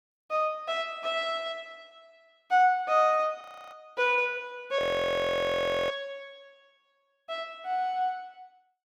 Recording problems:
audio freezing; at 3.5 s and at 5 s for 1 s

